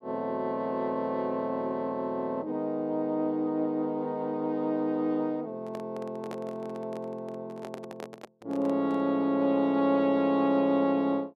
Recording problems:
microphone handling noise; from 5.5 to 9 s; peak -7 dB vs average level

